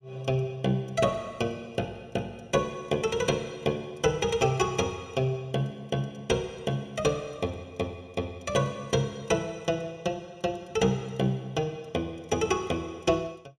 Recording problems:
none

